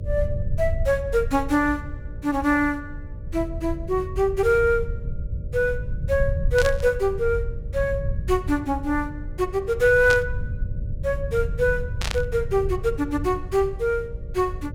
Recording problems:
hum; 60 Hz, harmonics up to 600 Hz, SNR 25 dB
rumble; below 96 Hz, SNR 8 dB
static burst; at 6.5 s, at 10 s and at 12 s; peak -1 dB vs average level

